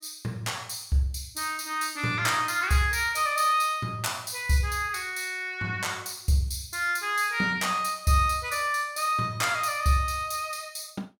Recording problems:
none

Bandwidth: 17 kHz